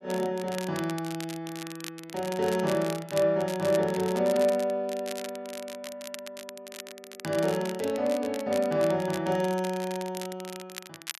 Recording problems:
crackling; vinyl, SNR 14 dB

